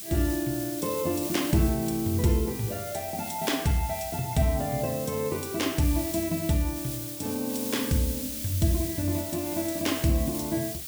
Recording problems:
background hiss; SNR 7 dB

